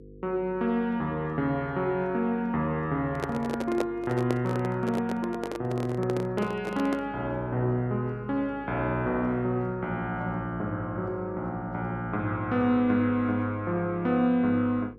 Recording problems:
hum; 50 Hz, harmonics up to 500 Hz, SNR 21 dB
microphone handling noise; from 3 to 7 s; peak +2 dB vs average level

